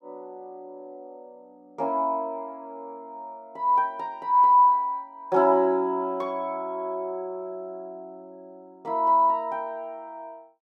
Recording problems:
none

